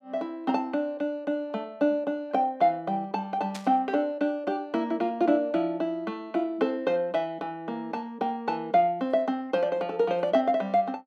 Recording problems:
burst of static; at 3.5 s; peak -7 dB vs average level

